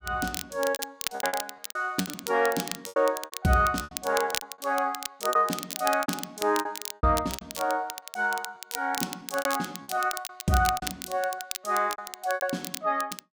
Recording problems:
crackling; vinyl, SNR 8 dB
packet loss; 15% of the sound replaced, filled with repeated pitch periods

